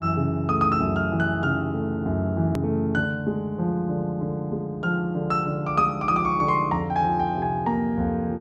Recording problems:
click at an edit; at 2.5 s

